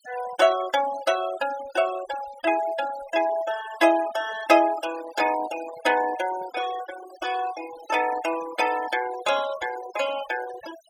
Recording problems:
denoising artefacts; signal-to-artefact ratio 13 dB

